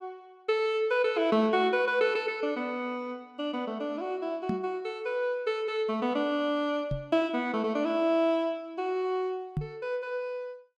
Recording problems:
knock on the microphone; at 4.5 s, at 7 s and at 9.5 s; peak +2 dB vs average level

